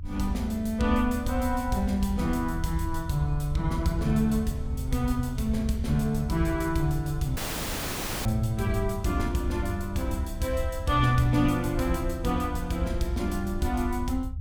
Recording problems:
low-frequency rumble; below 80 Hz, SNR 8 dB
dropout; at 7.5 s for 1 s

